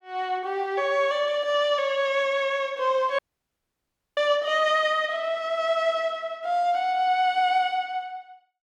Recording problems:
audio cutting out; at 3 s for 1 s

